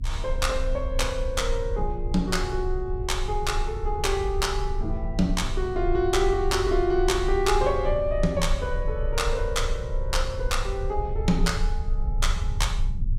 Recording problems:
low-frequency rumble; below 58 Hz, strongest tone 28 Hz, SNR 4 dB

